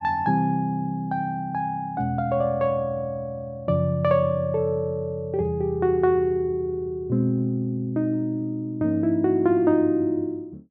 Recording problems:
none

